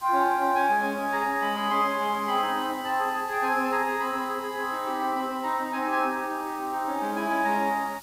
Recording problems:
background hiss; slope -1 dB per octave, SNR 20 dB

